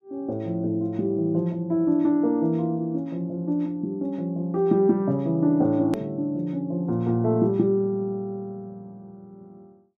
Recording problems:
click at an edit; at 6 s

